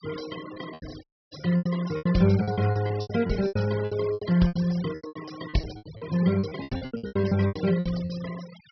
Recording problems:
treble cut off; nothing above 5.5 kHz
noise reduction artefacts; signal-to-artefact ratio 17 dB
lost packets; 22% of the sound replaced, filled with repeated pitch periods
audio cutting out; at 1 s

